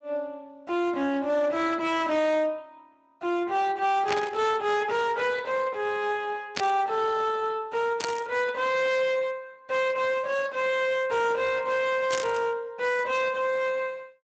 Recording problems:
codec artefacts; Speex, log-spectral distance 3 dB, nothing above 7.3 kHz
distortion; hard clipping, uneven, signal-to-distortion ratio 10 dB
static burst; 4 times, first at 4 s; peak +1 dB vs average level

